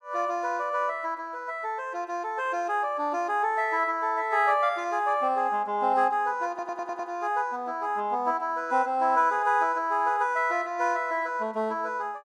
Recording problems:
audio stuttering; at 6.5 s

